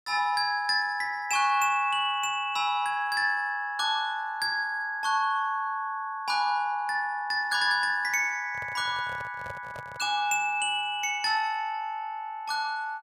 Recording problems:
microphone handling noise; from 8.5 to 10 s; peak -11 dB vs average level

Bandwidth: 15 kHz